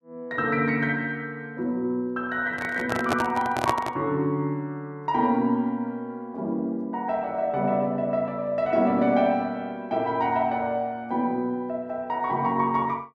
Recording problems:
handling noise; from 2.5 to 4 s; peak +4 dB vs average level

